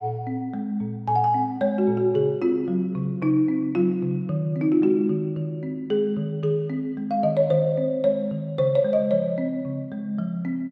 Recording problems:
none

